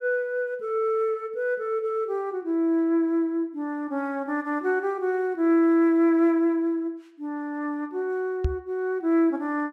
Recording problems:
microphone bump; at 8.5 s; peak +3 dB vs average level

